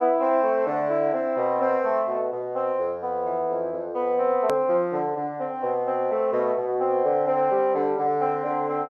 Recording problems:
edit click; at 4.5 s

